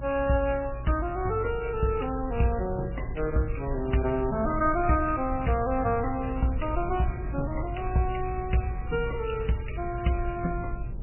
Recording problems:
lossy codec; MP3, log-spectral distance 4 dB, nothing above 2.9 kHz
mains hum; 60 Hz, harmonics up to 600 Hz, SNR 17 dB
rumble; below 76 Hz, SNR 8 dB

